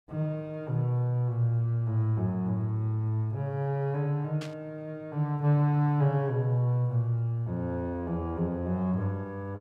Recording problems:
burst of static; at 4.5 s; peak -9 dB vs average level

